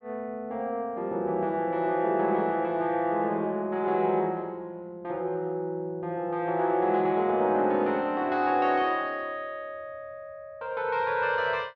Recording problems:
none

